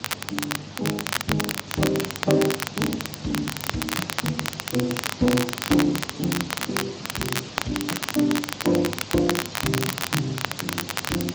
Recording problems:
lossy codec; Opus, then Speex, log-spectral distance 17 dB, nothing above 16.5 kHz
hum; 50 Hz, harmonics up to 500 Hz, SNR 18 dB
hiss; SNR 10 dB
crackling; vinyl, SNR 2 dB

